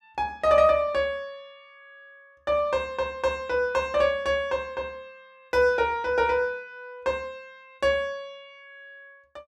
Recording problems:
none

